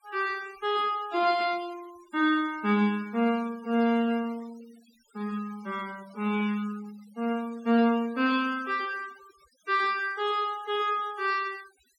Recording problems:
noise reduction artefacts; signal-to-artefact ratio 22 dB

